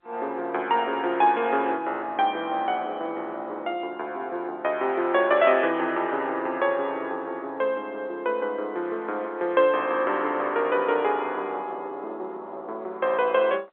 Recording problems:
phone line; 300 Hz to 3.5 kHz, G.711

